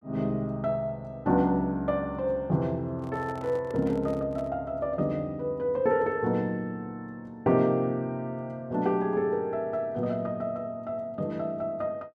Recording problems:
handling noise; from 3 to 4.5 s; peak -10 dB vs average level

